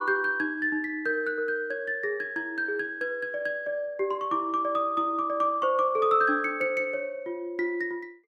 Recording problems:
none

